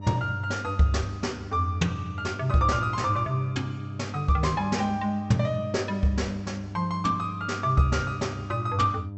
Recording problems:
treble missing; nothing above 8 kHz
hum; 50 Hz, harmonics up to 600 Hz, SNR 11 dB

